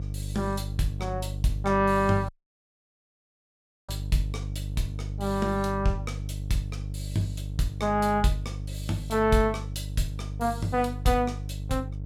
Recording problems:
hum; 50 Hz, harmonics up to 450 Hz, SNR 7 dB
audio cutting out; at 2.5 s for 1.5 s

